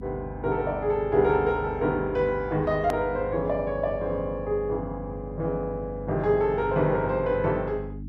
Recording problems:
hum; 50 Hz, harmonics up to 300 Hz, SNR 12 dB
hard cut with a click; at 3 s

